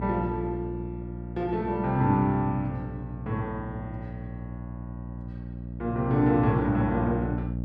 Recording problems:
hum; 60 Hz, harmonics up to 600 Hz, SNR 8 dB

